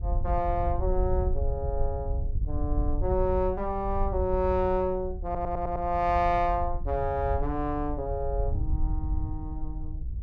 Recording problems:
wind noise; below 72 Hz, SNR 4 dB
stutter; at 5.5 s

